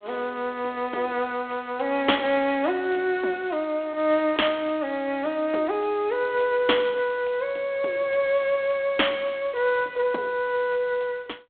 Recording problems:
phone line; 240 Hz to 3.5 kHz, G.726

